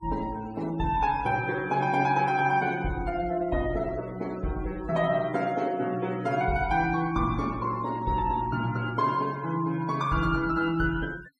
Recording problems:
noise reduction artefacts; signal-to-artefact ratio 21 dB

